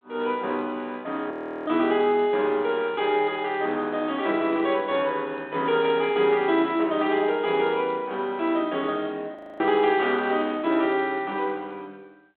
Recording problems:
telephone audio; 220 Hz to 4 kHz, G.726
frozen audio; at 1.5 s and at 9.5 s

